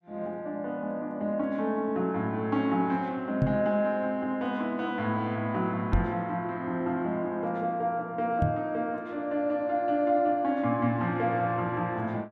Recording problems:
microphone thump; at 3.5 s, at 6 s and at 8.5 s; peak +6 dB vs average level

